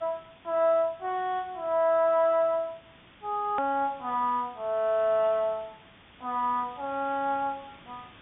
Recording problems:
treble missing; nothing above 3.6 kHz
hiss; SNR 25 dB
hard cut with a click; at 3.5 s

